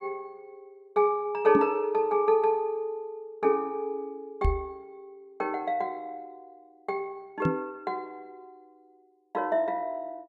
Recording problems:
microphone bump; at 1.5 s, at 4.5 s and at 7.5 s; peak +6 dB vs average level

